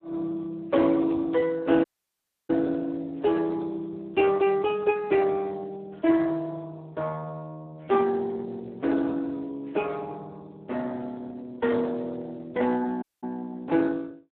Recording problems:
phone line; 190 Hz to 3.3 kHz, Speex
dropout; at 2 s for 0.5 s and at 13 s

